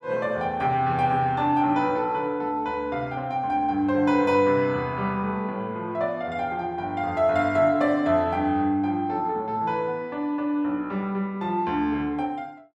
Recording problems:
none

